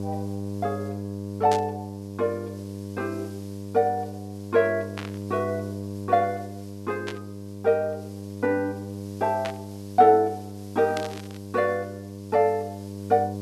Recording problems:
hum; 50 Hz, harmonics up to 1 kHz, SNR 10 dB
background hiss; slope +3 dB per octave, SNR 27 dB
burst of static; 5 times, first at 1.5 s; peak -4 dB vs average level

